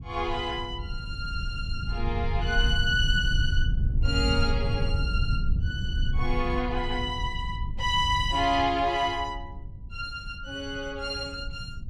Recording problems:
rumble; below 90 Hz, SNR 2 dB

